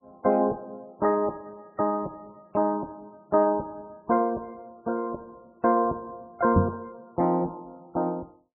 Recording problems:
lossy compression; MP3, log-spectral distance 2 dB
knock on the microphone; at 6.5 s; peak +8 dB vs average level

